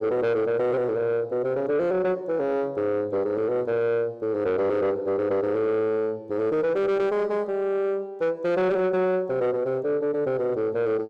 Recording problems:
distortion; soft clipping, signal-to-distortion ratio 10 dB

